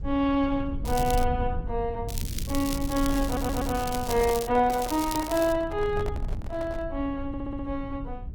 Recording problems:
lossy codec; Opus, log-spectral distance 3 dB
rumble; below 86 Hz, SNR 8 dB
crackling; at 1 s, from 2 to 4.5 s and at 4.5 s; loose cable, SNR 10 dB
handling noise; from 3 to 7 s; peak -5 dB vs average level
audio stuttering; at 3.5 s and at 7.5 s

